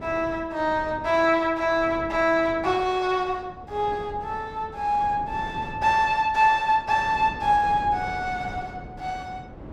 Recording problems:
wind on the microphone; below 450 Hz, SNR 17 dB

